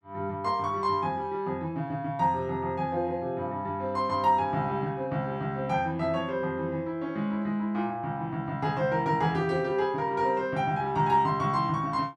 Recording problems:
none

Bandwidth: 12.5 kHz